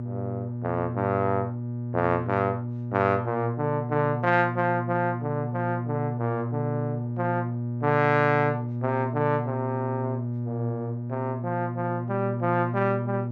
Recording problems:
hum; 60 Hz, harmonics up to 600 Hz, SNR 4 dB

